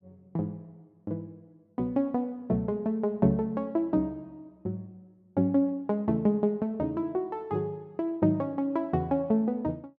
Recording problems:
none

